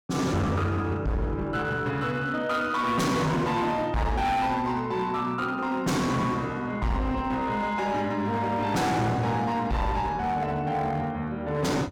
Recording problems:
distortion; hard clipping, signal-to-distortion ratio 7 dB

